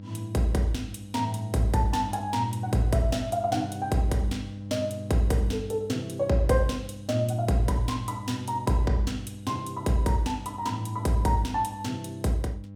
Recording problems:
hum; 50 Hz, harmonics up to 600 Hz, SNR 12 dB

